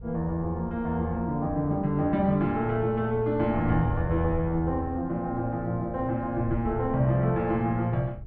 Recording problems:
wind noise; below 110 Hz, SNR 13 dB

